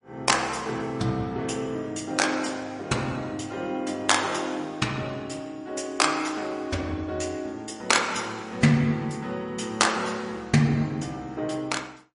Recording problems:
codec artefacts; MP3, log-spectral distance 3 dB, nothing above 10.4 kHz

